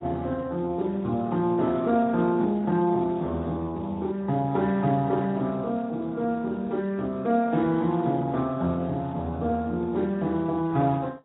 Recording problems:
codec artefacts; Speex, then AAC, log-spectral distance 2 dB, nothing above 3.8 kHz

